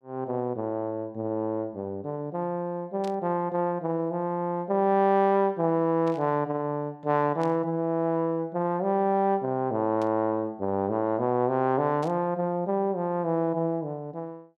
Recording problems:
burst of static; 5 times, first at 3 s; peak -14 dB vs average level

